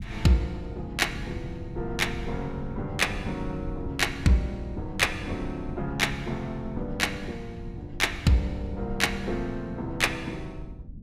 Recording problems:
rumble; below 130 Hz, SNR 12 dB

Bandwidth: 15.5 kHz